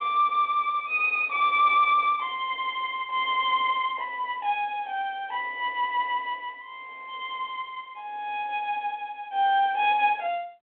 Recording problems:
telephone audio; 280 Hz to 3.7 kHz, G.726

